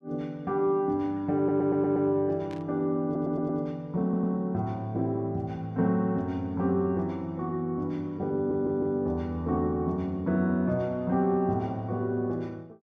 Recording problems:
audio stuttering; 4 times, first at 1.5 s
burst of static; at 2.5 s; peak -16 dB vs average level

